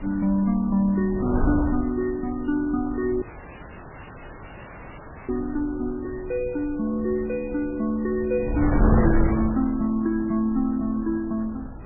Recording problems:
codec artefacts; MP3, log-spectral distance 5 dB, nothing above 2.4 kHz
wind on the microphone; below 240 Hz, SNR 5 dB
audio cutting out; at 3 s for 2 s

